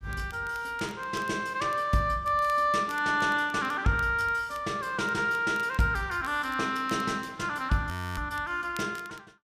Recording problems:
crackle; vinyl, SNR 25 dB
audio freezing; at 8 s

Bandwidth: 15 kHz